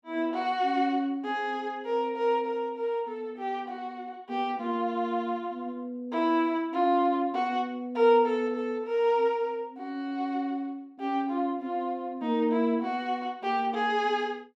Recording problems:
none

